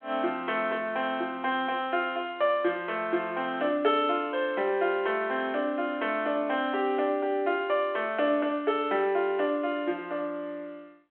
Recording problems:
telephone audio; 260 Hz to 3.6 kHz, G.726

